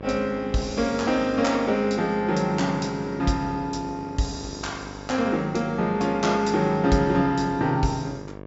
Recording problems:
treble missing; nothing above 8 kHz
hum; 50 Hz, harmonics up to 2.3 kHz, SNR 15 dB

